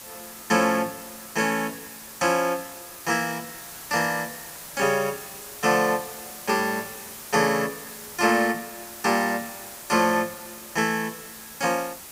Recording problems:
background hiss; slope -1 dB per octave, SNR 13 dB

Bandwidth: 15.5 kHz